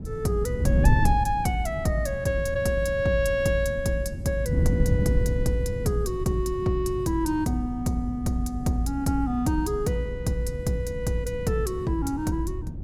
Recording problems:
wind on the microphone; below 150 Hz, SNR 4 dB

